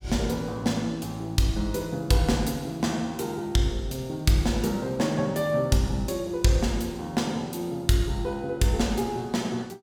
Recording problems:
none

